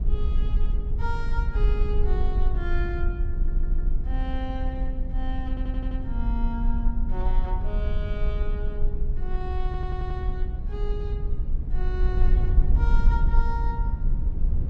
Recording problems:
rumble; below 52 Hz, strongest tone 22 Hz, SNR -9 dB
audio stuttering; at 3.5 s, at 5.5 s and at 9.5 s

